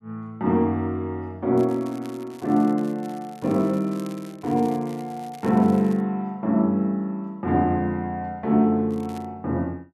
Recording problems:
crackling; from 1.5 to 6 s and at 9 s; loose cable, SNR 26 dB

